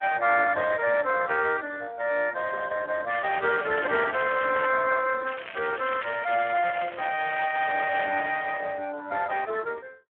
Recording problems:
telephone audio; 300 Hz to 3.1 kHz, Speex
crackle; from 3 to 4.5 s and from 5.5 to 8 s; loose cable, SNR 12 dB

